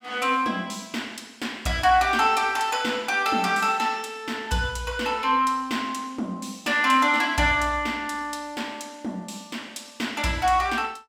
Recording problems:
none

